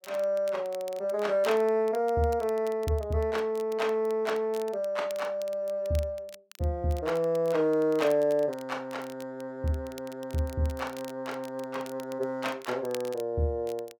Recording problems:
crackle; vinyl, SNR 21 dB

